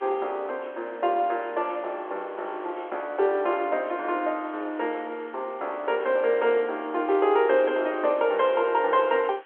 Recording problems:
telephone audio; 320 Hz to 3.7 kHz, G.711
background hiss; SNR 27 dB

